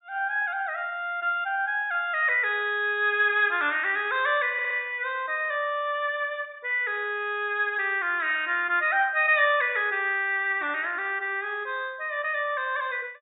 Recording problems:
treble cut off; nothing above 3.8 kHz
audio stuttering; at 4.5 s

